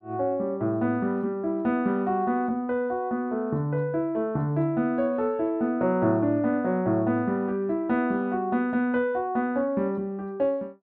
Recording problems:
none

